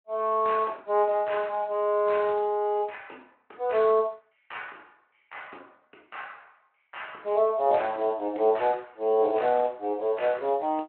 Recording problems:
phone line; 260 Hz to 3.2 kHz, Speex

